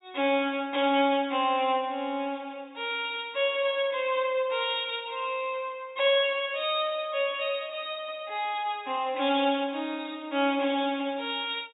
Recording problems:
treble missing; nothing above 4 kHz

